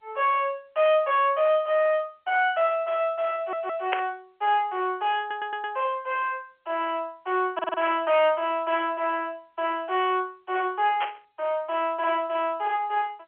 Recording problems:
telephone audio; 340 Hz to 3.3 kHz, G.711
distorted audio; hard clipping, uneven, signal-to-distortion ratio 10 dB
audio stuttering; at 3.5 s, at 5 s and at 7.5 s
burst of static; at 4 s and at 11 s; peak +3 dB vs average level

